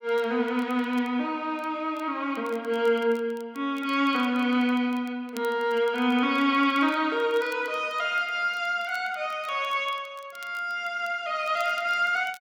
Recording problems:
crackling; vinyl, SNR 27 dB

